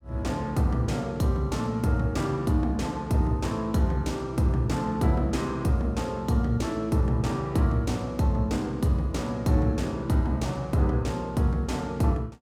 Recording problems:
none

